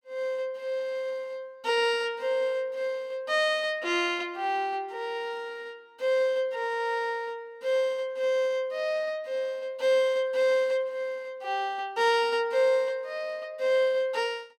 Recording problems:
none

